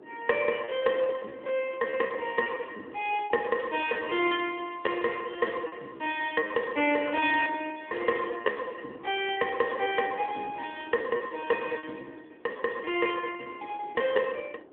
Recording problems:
phone line; 240 Hz to 3.5 kHz, AMR-NB
wind noise; below 550 Hz, SNR 21 dB
lost packets; 18% of the sound replaced, filled with repeated pitch periods

